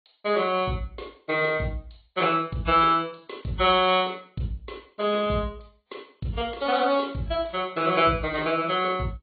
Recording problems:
low-pass filter; nothing above 3.9 kHz
lossy codec; AAC, log-spectral distance 4 dB

